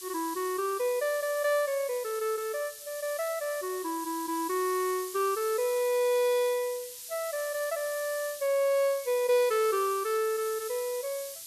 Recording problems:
hiss; SNR 11 dB

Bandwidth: 13.5 kHz